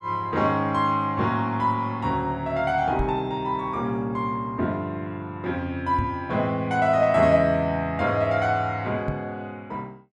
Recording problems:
microphone thump; at 3 s, at 6 s and at 9 s; peak 0 dB vs average level

